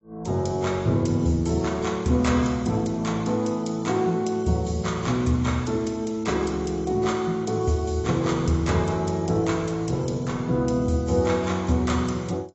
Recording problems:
lossy codec; AAC, log-spectral distance 3 dB, nothing above 7.6 kHz

